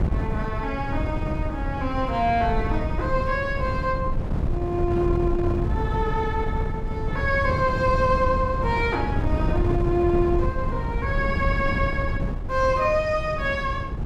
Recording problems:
wind on the microphone; below 170 Hz, SNR 2 dB

